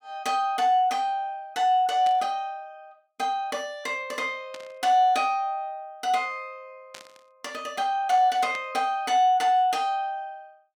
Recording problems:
burst of static; 4 times, first at 2 s; peak -11 dB vs average level

